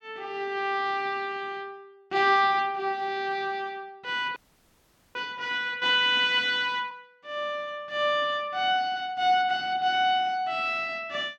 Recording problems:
audio freezing; at 4.5 s for 1 s

